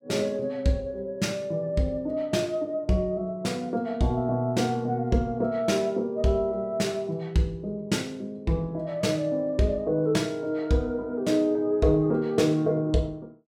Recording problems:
none

